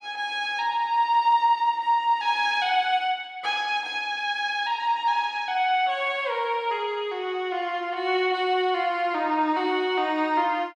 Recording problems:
none

